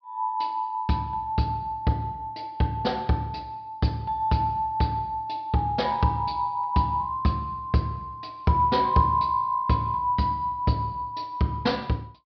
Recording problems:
low-pass filter; nothing above 5.5 kHz

